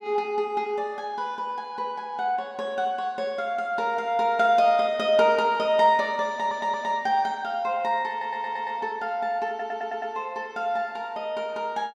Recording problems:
stutter; at 6.5 s, at 8 s and at 9.5 s

